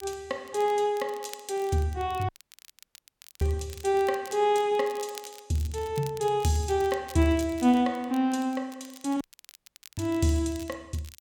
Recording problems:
crackle; vinyl, SNR 20 dB
dropout; at 2.5 s for 1 s and at 9 s for 1 s

